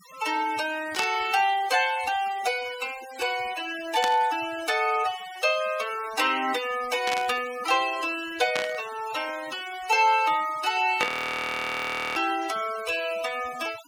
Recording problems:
denoising artefacts; signal-to-artefact ratio 16 dB
burst of static; 5 times, first at 1 s; peak +1 dB vs average level
audio freezing; at 11 s for 1 s

